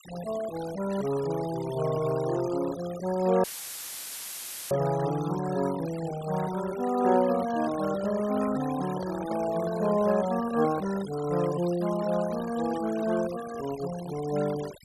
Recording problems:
noise reduction artefacts; signal-to-artefact ratio 15 dB
dropout; at 3.5 s for 1.5 s; filled with static
microphone handling noise; from 7.5 to 11 s; peak -6 dB vs average level

